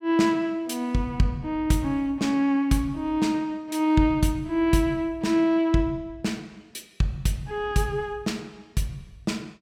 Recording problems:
none

